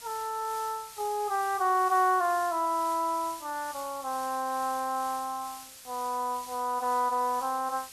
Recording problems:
background hiss; slope +2 dB per octave, SNR 15 dB

